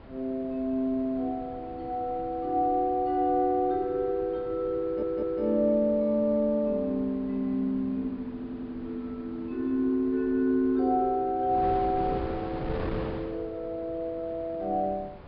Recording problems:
low-pass filter; nothing above 5.1 kHz
wind on the microphone; below 610 Hz, SNR 15 dB
stutter; at 5 s and at 8.5 s

